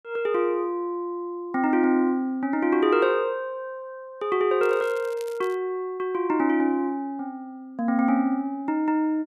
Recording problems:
crackling; at 4.5 s; loose cable, SNR 25 dB

